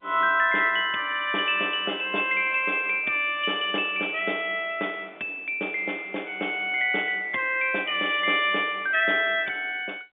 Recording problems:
telephone audio; 240 Hz to 3.6 kHz, G.711

